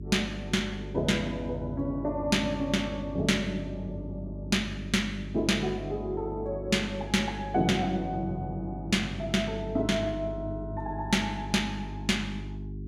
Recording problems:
hum; 50 Hz, harmonics up to 400 Hz, SNR 9 dB

